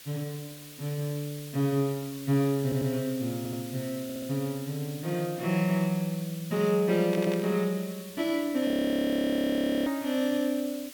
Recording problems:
hiss; SNR 15 dB
audio stuttering; 4 times, first at 2.5 s
burst of static; at 7 s; peak -7 dB vs average level
frozen audio; at 8.5 s for 1 s

